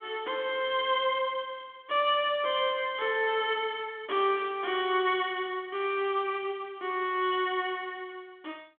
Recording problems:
telephone audio; 220 Hz to 3.5 kHz, G.726

